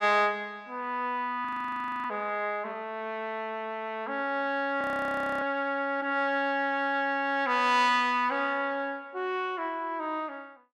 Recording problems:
audio freezing; at 1.5 s for 0.5 s and at 5 s for 0.5 s

